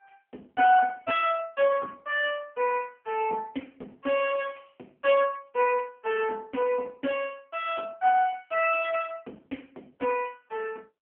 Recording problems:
telephone audio; 240 Hz to 3.3 kHz, AMR-NB

